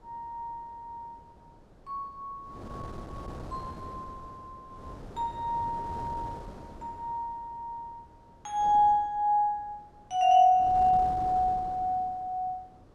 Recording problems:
wind on the microphone; below 540 Hz, SNR 17 dB

